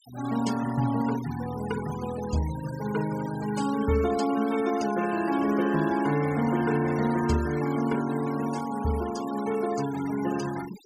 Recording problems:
denoising artefacts; signal-to-artefact ratio 15 dB

